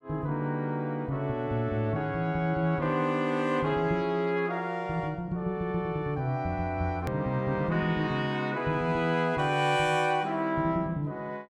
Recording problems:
click at an edit; at 7 s

